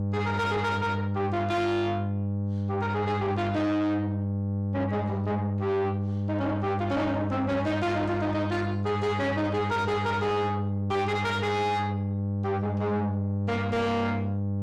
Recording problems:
distortion; soft clipping, signal-to-distortion ratio 7 dB
hum; 50 Hz, harmonics up to 600 Hz, SNR 2 dB

